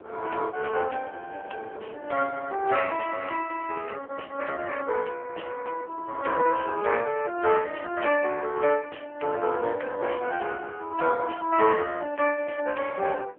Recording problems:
telephone audio; 340 Hz to 3.2 kHz, AMR-NB
wind on the microphone; below 630 Hz, SNR 20 dB

